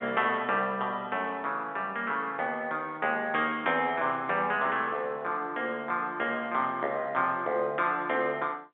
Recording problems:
phone line; 170 Hz to 3.7 kHz, G.711

